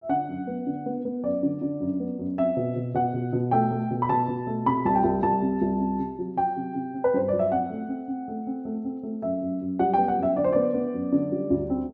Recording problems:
treble missing; nothing above 8 kHz

